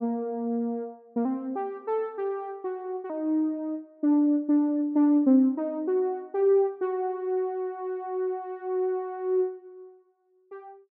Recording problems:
none

